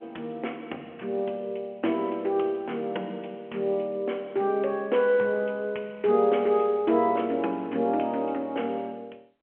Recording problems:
phone line; 280 Hz to 3.3 kHz, G.711

